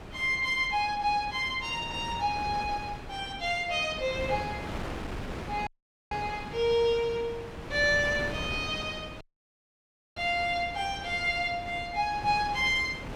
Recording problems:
wind on the microphone; below 950 Hz, SNR 11 dB
dropout; at 5.5 s and at 9 s for 1 s

